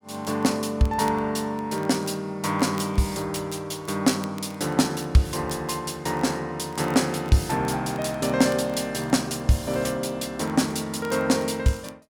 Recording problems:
crackle; vinyl, SNR 25 dB

